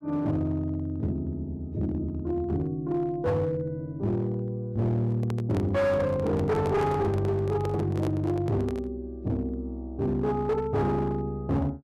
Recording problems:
distortion; hard clipping, uneven, signal-to-distortion ratio 10 dB
handling noise; from 5 to 9 s; peak -1 dB vs average level

